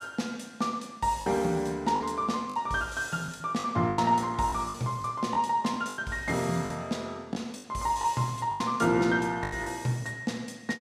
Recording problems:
lost packets; 8% of the sound replaced, filled with the last packet

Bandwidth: 15 kHz